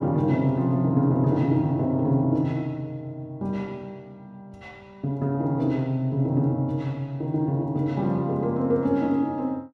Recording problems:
none

